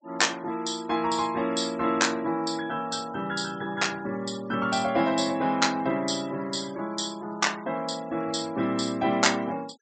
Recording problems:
treble missing; nothing above 8 kHz
noise reduction artefacts; signal-to-artefact ratio 24 dB

